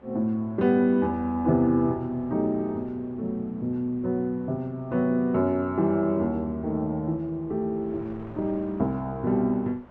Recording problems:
wind noise; below 970 Hz, SNR 25 dB

